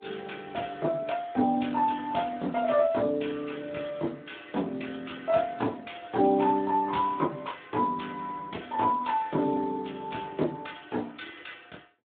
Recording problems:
telephone audio; 190 Hz to 3.6 kHz, Speex

